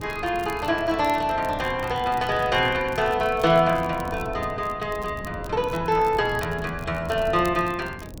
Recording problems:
wind on the microphone; below 260 Hz, SNR 15 dB
crackling; vinyl, SNR 24 dB

